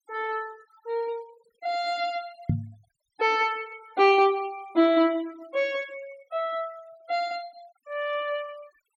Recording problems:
noise reduction artefacts; signal-to-artefact ratio 25 dB
knock on the microphone; at 2.5 s; peak +5 dB vs average level

